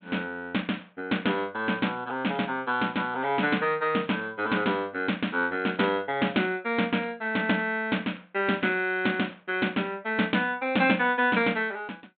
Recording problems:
low-pass filter; nothing above 4 kHz

